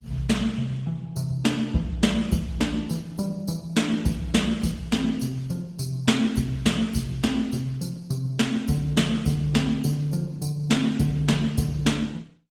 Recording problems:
lossy codec; Opus, then Opus, log-spectral distance 3 dB, nothing above 18 kHz

